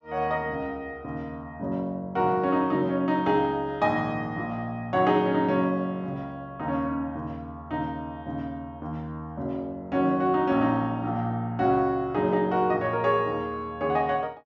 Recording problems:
treble missing; nothing above 7.6 kHz

